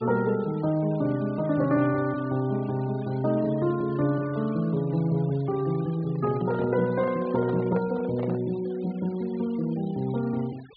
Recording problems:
treble cut off; nothing above 4.4 kHz
noise reduction artefacts; signal-to-artefact ratio 22 dB
microphone handling noise; from 6 to 8.5 s; peak -5 dB vs average level

